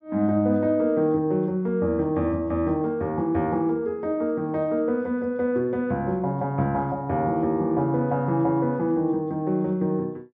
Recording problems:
none

